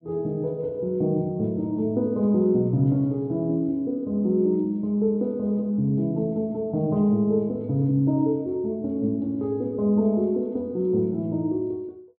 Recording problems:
treble missing; nothing above 4.7 kHz

